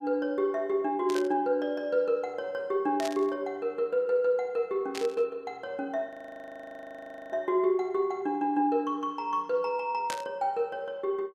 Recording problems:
burst of static; 4 times, first at 1 s; peak -3 dB vs average level
audio freezing; at 6 s for 1 s

